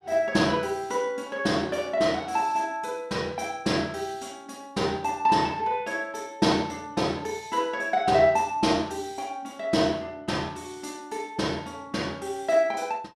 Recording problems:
none

